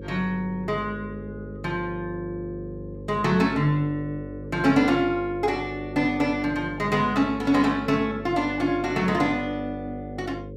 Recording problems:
electrical hum; 50 Hz, harmonics up to 550 Hz, SNR 13 dB

